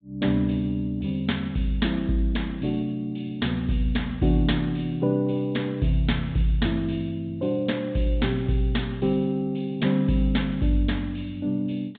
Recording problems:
low-pass filter; nothing above 3.8 kHz
codec artefacts; AAC, log-spectral distance 2 dB

